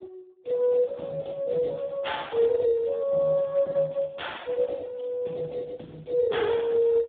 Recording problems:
telephone audio; 170 Hz to 3.6 kHz, Speex

